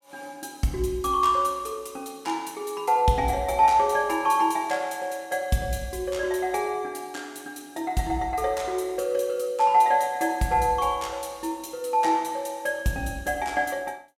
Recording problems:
none

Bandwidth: 16.5 kHz